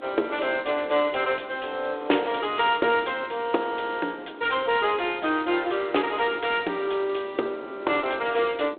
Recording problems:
telephone audio; 280 Hz to 3.6 kHz, G.726
wind on the microphone; below 530 Hz, SNR 19 dB

